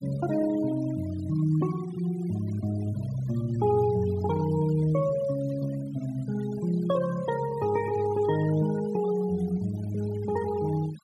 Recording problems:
noise reduction artefacts; signal-to-artefact ratio 18 dB

